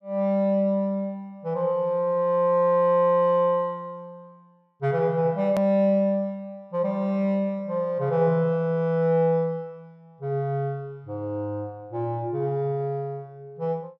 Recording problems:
hard cut with a click; at 5.5 s

